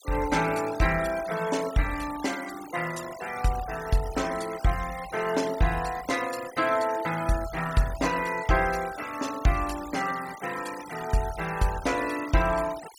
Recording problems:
denoising artefacts; signal-to-artefact ratio 14 dB

